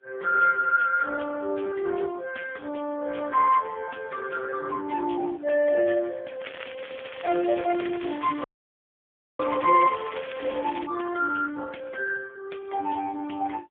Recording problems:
telephone audio; 190 Hz to 2.5 kHz, AMR-NB, then MP3
crackle; from 6.5 to 11 s; loose cable, SNR 15 dB
frozen audio; at 8.5 s for 1 s

